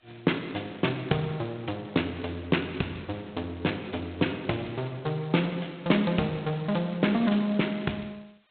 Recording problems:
telephone audio; 240 Hz to 4 kHz, G.726

